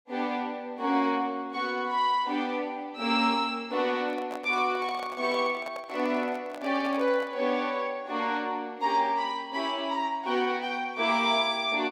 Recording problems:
handling noise; from 4 to 7.5 s; peak -7 dB vs average level

